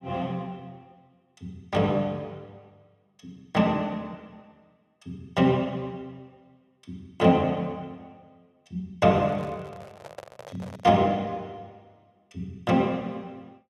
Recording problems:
microphone handling noise; from 9 to 11 s; peak -9 dB vs average level

